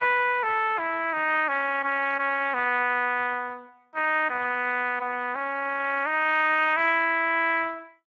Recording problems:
codec artefacts; Speex, log-spectral distance 3 dB, nothing above 7.3 kHz

